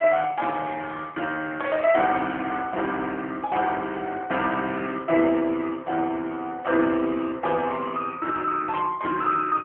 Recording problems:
telephone audio; 280 Hz to 3.4 kHz, AMR-NB

